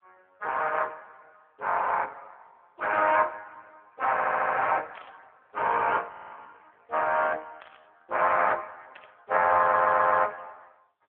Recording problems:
telephone audio; 390 Hz to 3.3 kHz, AMR-NB
stutter; at 4 s, at 6 s and at 9.5 s
burst of static; at 5 s, at 7.5 s and at 9 s; peak -15 dB vs average level

